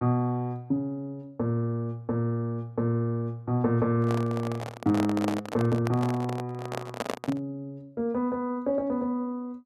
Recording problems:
microphone handling noise; from 4 to 7.5 s; peak +2 dB vs average level

